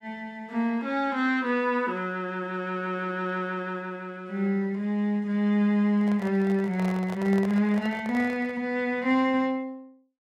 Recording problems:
handling noise; from 6 to 8.5 s; peak -8 dB vs average level

